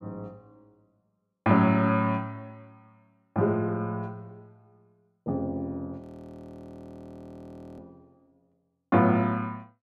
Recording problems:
frozen audio; at 6 s for 2 s

